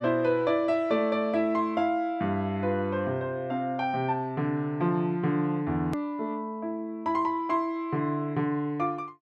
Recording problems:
hard cut with a click; at 6 s

